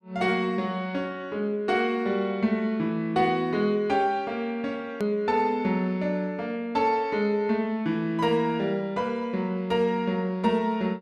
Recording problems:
edit click; at 5 s

